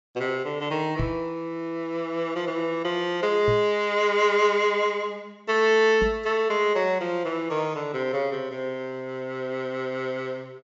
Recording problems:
treble missing; nothing above 8 kHz
microphone bump; at 1 s, at 3.5 s and at 6 s; peak 0 dB vs average level

